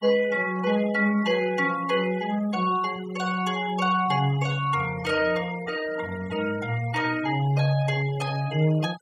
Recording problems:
noise reduction artefacts; signal-to-artefact ratio 17 dB

